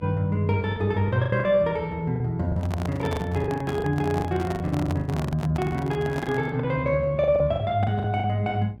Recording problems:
mains hum; 60 Hz, harmonics up to 660 Hz, SNR 21 dB
packet loss; 13% of the sound replaced, filled with the last packet
handling noise; from 2.5 to 6.5 s; peak -4 dB vs average level

